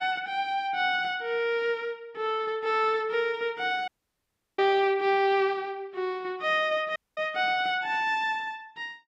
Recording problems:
lossy compression; Vorbis, log-spectral distance 2 dB
dropout; at 4 s for 0.5 s and at 7 s

